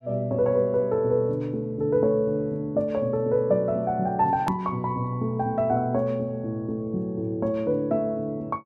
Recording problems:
hard cut with a click; at 4.5 s

